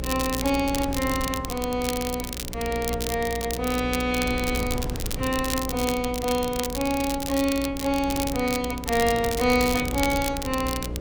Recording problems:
hum; 60 Hz, harmonics up to 600 Hz, SNR 11 dB
wind noise; below 190 Hz, SNR 12 dB
crackling; vinyl, SNR 7 dB

